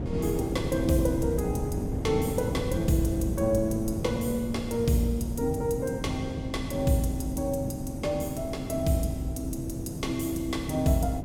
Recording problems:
wind on the microphone; below 260 Hz, SNR 5 dB

